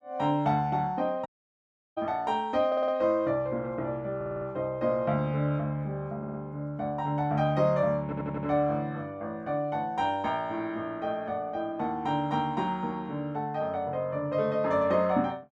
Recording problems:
audio cutting out; at 1.5 s for 0.5 s
audio stuttering; 4 times, first at 2.5 s

